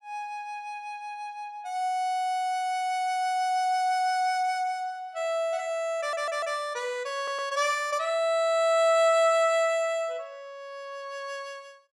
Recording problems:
audio stuttering; at 6 s and at 7 s

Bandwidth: 16 kHz